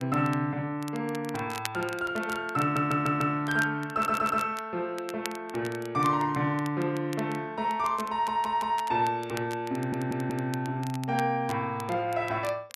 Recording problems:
crackling; vinyl, SNR 17 dB
audio stuttering; 4 times, first at 2.5 s

